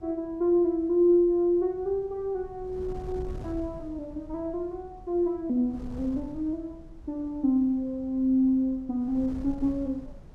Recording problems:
wind noise; below 150 Hz, SNR 18 dB

